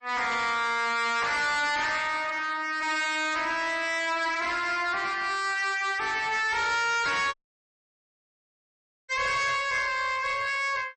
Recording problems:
lossy codec; MP3, then MP3, log-spectral distance 4 dB, nothing above 8.2 kHz
distortion; hard clipping, signal-to-distortion ratio 6 dB
audio cutting out; at 7.5 s for 1.5 s

